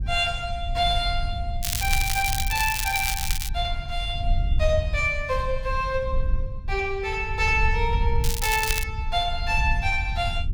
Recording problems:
low-frequency rumble; below 74 Hz, SNR 4 dB
crackle; from 1.5 to 3.5 s and at 8 s; loose cable, SNR 2 dB

